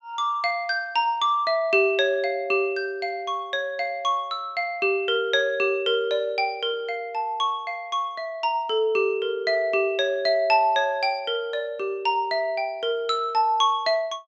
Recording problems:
low-pass filter; nothing above 8 kHz

